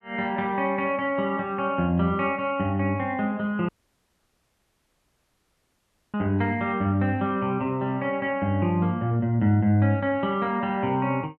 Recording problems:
audio cutting out; at 3.5 s for 2.5 s

